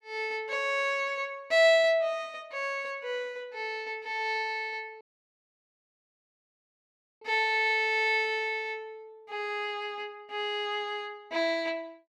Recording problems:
dropout; at 5 s for 2 s

